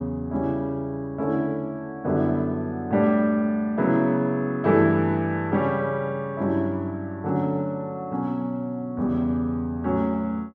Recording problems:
none

